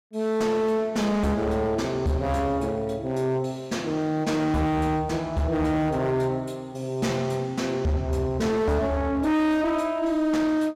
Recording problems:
distorted audio; hard clipping, uneven, signal-to-distortion ratio 7 dB

